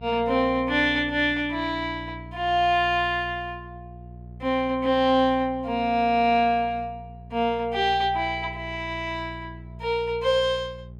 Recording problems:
hum; 60 Hz, harmonics up to 600 Hz, SNR 17 dB

